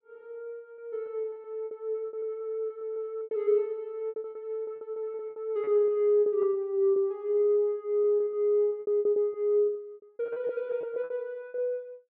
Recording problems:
packet loss; 15% of the sound replaced, filled with repeated pitch periods

